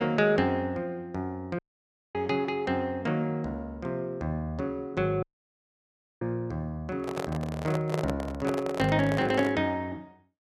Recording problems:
audio cutting out; at 1.5 s for 0.5 s and at 5 s for 1 s
handling noise; from 7 to 9.5 s; peak +1 dB vs average level

